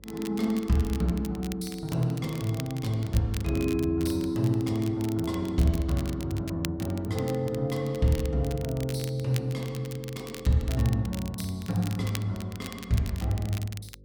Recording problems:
hum; 50 Hz, harmonics up to 550 Hz, SNR 25 dB
crackle; vinyl, SNR 16 dB

